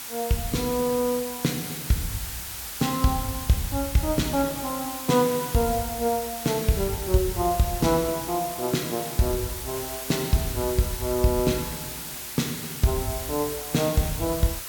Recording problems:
hiss; slope +1 dB per octave, SNR 7 dB

